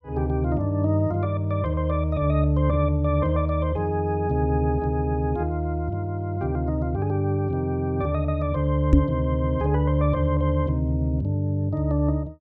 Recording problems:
microphone thump; at 9 s; peak +10 dB vs average level

